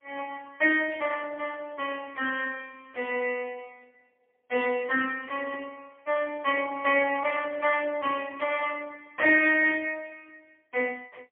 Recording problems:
telephone audio; 340 Hz to 3.4 kHz, AMR-NB, then MP3

